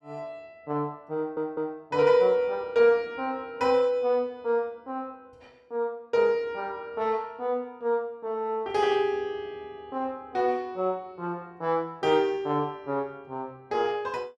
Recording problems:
audio stuttering; at 1 s

